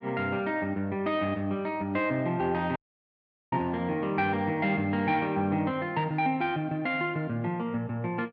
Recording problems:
dropout; at 3 s for 1 s

